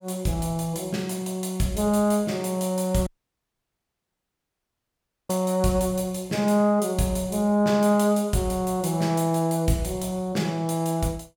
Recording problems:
audio cutting out; at 3 s for 2 s

